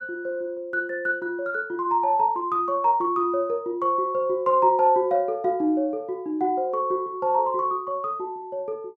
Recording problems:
none

